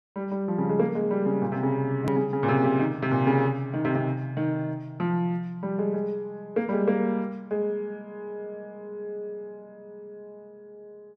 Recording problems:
edit click; at 2 s

